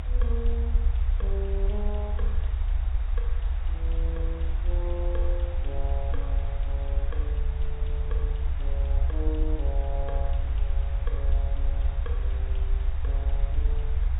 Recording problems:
treble missing; nothing above 4 kHz
hiss; SNR 8 dB
rumble; below 64 Hz, SNR -11 dB

